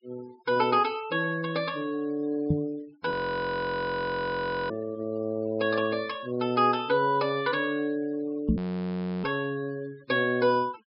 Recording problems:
low-pass filter; nothing above 5.5 kHz
noise reduction artefacts; signal-to-artefact ratio 23 dB
microphone thump; at 2.5 s and at 8.5 s; peak +7 dB vs average level
frozen audio; at 3 s for 1.5 s and at 8.5 s for 0.5 s

